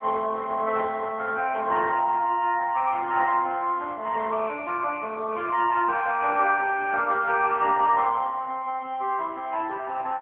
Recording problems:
phone line; 280 Hz to 3.1 kHz, AMR-NB

